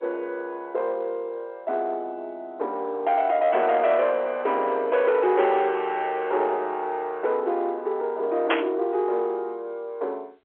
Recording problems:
phone line; 300 Hz to 3.6 kHz, G.711
distorted audio; soft clipping, signal-to-distortion ratio 12 dB
static burst; at 8.5 s; peak +5 dB vs average level

